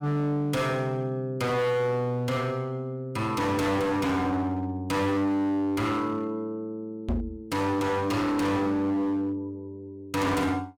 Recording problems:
distortion; hard clipping, uneven, signal-to-distortion ratio 7 dB
microphone bump; at 7 s; peak +2 dB vs average level

